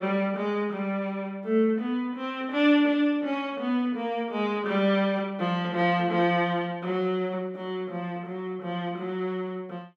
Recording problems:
none

